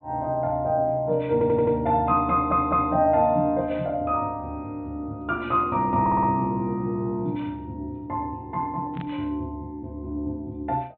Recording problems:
low-pass filter; nothing above 4 kHz
audio stuttering; at 1.5 s, at 2.5 s and at 6 s
static burst; at 9 s; peak -14 dB vs average level

